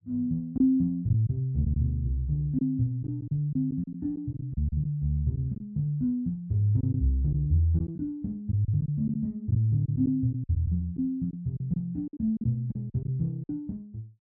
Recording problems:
lost packets; 7% of the sound replaced, filled with silence

